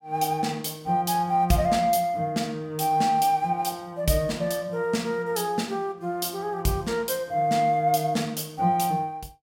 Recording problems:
none

